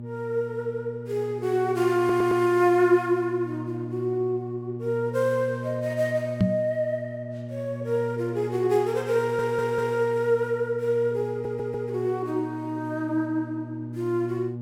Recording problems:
electrical hum; 60 Hz, harmonics up to 600 Hz, SNR 10 dB
stutter; at 2 s, at 9 s and at 11 s
knock on the microphone; at 6.5 s; peak +7 dB vs average level

